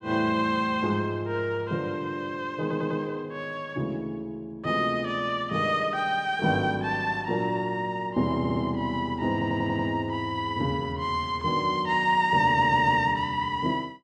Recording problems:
stutter; 4 times, first at 2.5 s

